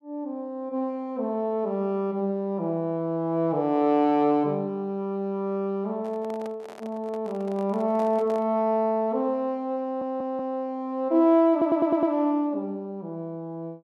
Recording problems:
microphone handling noise; from 6 to 8.5 s; peak -9 dB vs average level
stutter; at 10 s and at 12 s

